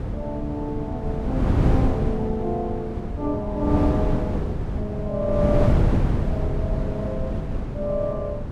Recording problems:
wind noise; below 230 Hz, SNR -3 dB

